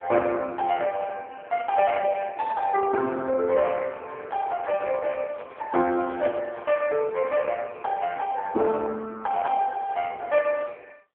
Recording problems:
phone line; 300 Hz to 3.6 kHz, AMR-NB
handling noise; from 4 to 7.5 s; peak -5 dB vs average level

